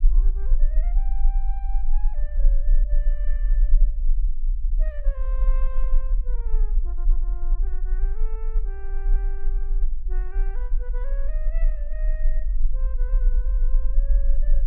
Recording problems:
low-frequency rumble; below 36 Hz, strongest tone 18 Hz, SNR -20 dB

